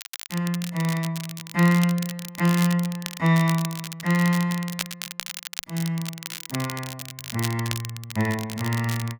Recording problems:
crackling; vinyl, SNR 10 dB

